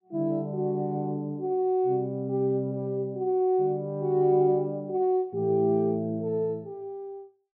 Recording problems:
none

